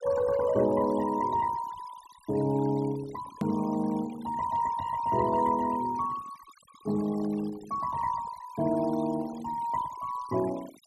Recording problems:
noise reduction artefacts; signal-to-artefact ratio 17 dB
hard cut with a click; at 3.5 s

